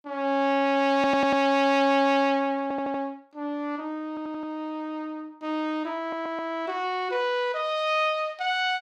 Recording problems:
audio stuttering; 4 times, first at 1 s

